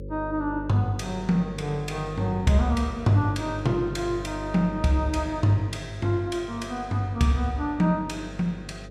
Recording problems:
electrical hum; 50 Hz, harmonics up to 550 Hz, SNR 13 dB

